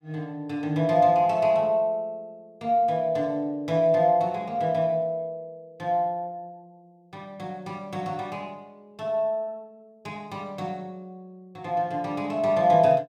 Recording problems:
none

